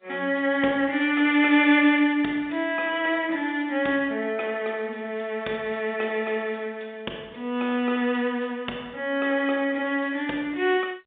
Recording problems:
phone line; 240 Hz to 3.7 kHz, G.711

